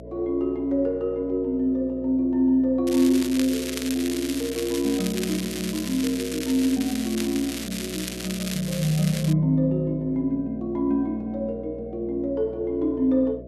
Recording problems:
hum; 60 Hz, harmonics up to 660 Hz, SNR 16 dB
crackling; from 3 to 9.5 s; loose cable, SNR 9 dB

